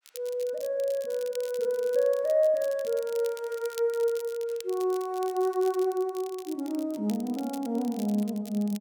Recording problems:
crackling; vinyl, SNR 19 dB

